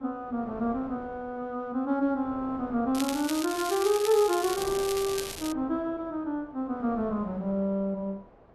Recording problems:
wind noise; below 770 Hz, SNR 18 dB
crackle; from 3 to 5.5 s; loose cable, SNR 8 dB

